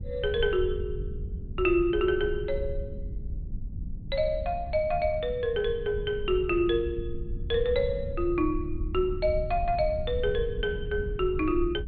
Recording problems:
treble cut off; nothing above 4.5 kHz
low-frequency rumble; below 84 Hz, SNR 9 dB

